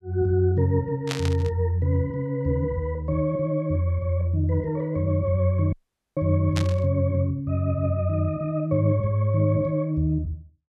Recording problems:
burst of static; at 1 s and at 6.5 s; peak -1 dB vs average level
audio cutting out; at 5.5 s

